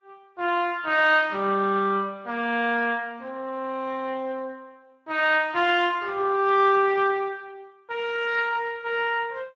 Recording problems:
lossy codec; Vorbis, then Speex, log-spectral distance 3 dB

